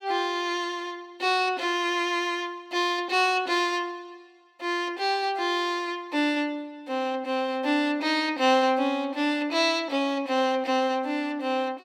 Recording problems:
none

